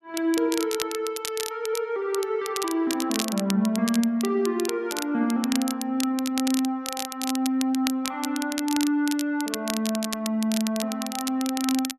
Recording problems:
crackling; vinyl, SNR 7 dB

